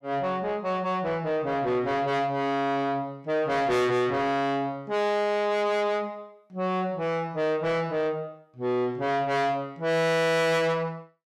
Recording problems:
distorted audio; soft clipping, signal-to-distortion ratio 7 dB

